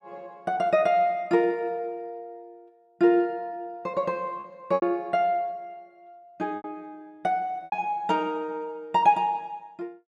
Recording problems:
lost packets; 4% of the sound replaced, filled with repeated pitch periods

